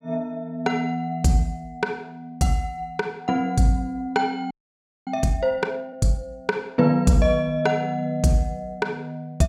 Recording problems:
frozen audio; at 4.5 s for 0.5 s

